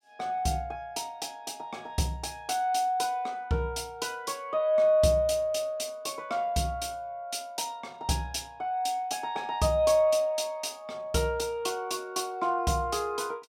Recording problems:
none

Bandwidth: 16 kHz